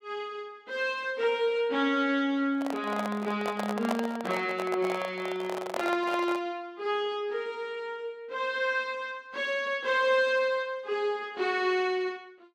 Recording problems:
handling noise; from 2.5 to 6.5 s; peak +3 dB vs average level

